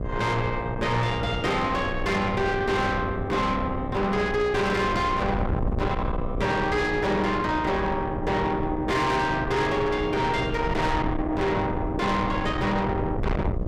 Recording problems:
distorted audio; soft clipping, signal-to-distortion ratio 7 dB
hum; 60 Hz, harmonics up to 1.4 kHz, SNR 11 dB
wind noise; below 380 Hz, SNR 7 dB

